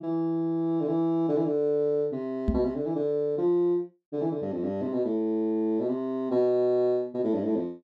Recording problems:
microphone bump; at 2.5 s; peak +5 dB vs average level

